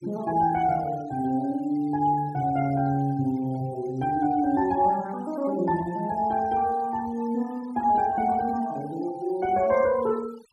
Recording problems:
denoising artefacts; signal-to-artefact ratio 21 dB

